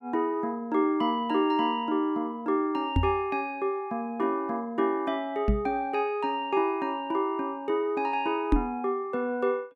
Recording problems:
microphone bump; at 3 s, at 5.5 s and at 8.5 s; peak +8 dB vs average level

